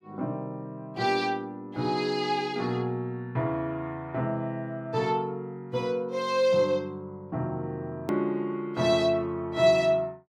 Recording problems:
hard cut with a click; at 8 s

